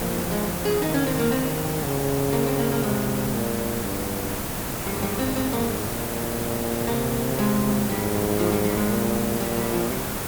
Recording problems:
hiss; slope -5 dB per octave, SNR 2 dB

